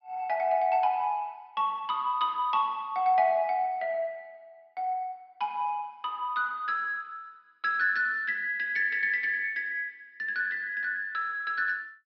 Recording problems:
treble missing; nothing above 5.5 kHz

